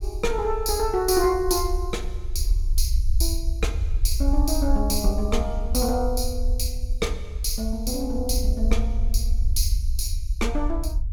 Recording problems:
low-frequency rumble; below 58 Hz, SNR 1 dB

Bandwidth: 18 kHz